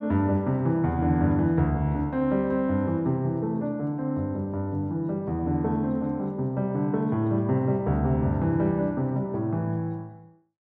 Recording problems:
none

